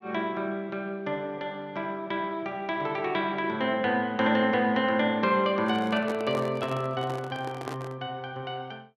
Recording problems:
microphone handling noise; from 5.5 to 8 s; peak -5 dB vs average level

